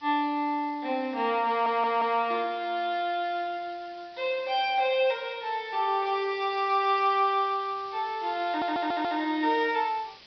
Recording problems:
low-pass filter; nothing above 5.5 kHz
background hiss; slope +1 dB per octave, SNR 24 dB
audio stuttering; at 1.5 s and at 8.5 s

